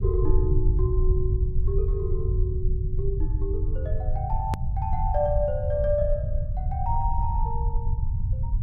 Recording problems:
low-frequency rumble; below 90 Hz, SNR -4 dB
hard cut with a click; at 4.5 s

